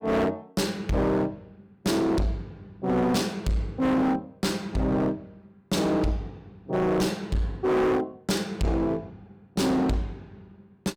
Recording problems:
distortion; hard clipping, signal-to-distortion ratio 8 dB

